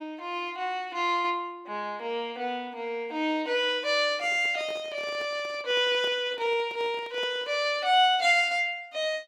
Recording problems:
handling noise; from 4 to 7.5 s; peak -11 dB vs average level

